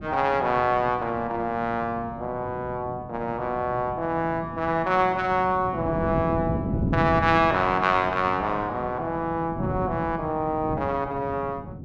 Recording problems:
wind noise; below 270 Hz, SNR 9 dB

